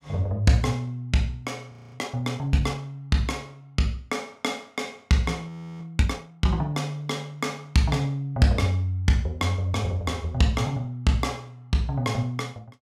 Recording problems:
audio freezing; at 1.5 s and at 5.5 s

